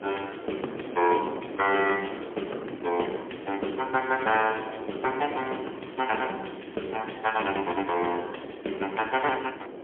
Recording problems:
phone line; 260 Hz to 3.2 kHz, AMR-NB, then MP3
wind on the microphone; below 570 Hz, SNR 10 dB
crackle; from 5 to 8 s; loose cable, SNR 25 dB

